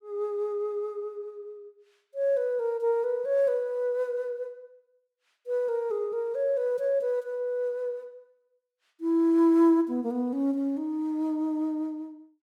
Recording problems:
none

